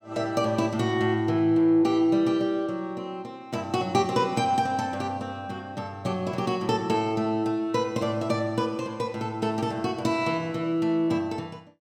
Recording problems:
none

